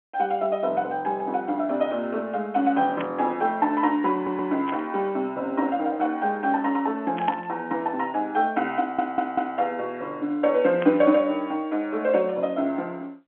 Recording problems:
phone line; 240 Hz to 3.4 kHz, G.711
burst of static; 4 times, first at 3 s; peak -5 dB vs average level
audio stuttering; at 4 s and at 9 s

